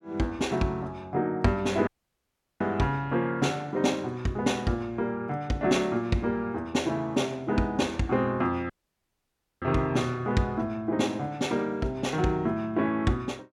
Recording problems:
audio cutting out; at 2 s for 0.5 s and at 8.5 s for 1 s

